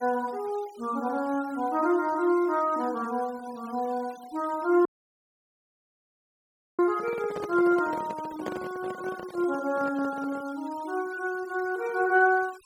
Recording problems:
denoising artefacts; signal-to-artefact ratio 22 dB
audio cutting out; at 5 s for 2 s
handling noise; from 7 to 10 s; peak -3 dB vs average level

